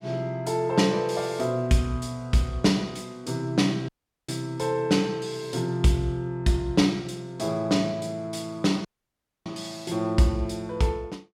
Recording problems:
audio cutting out; at 4 s and at 9 s for 0.5 s

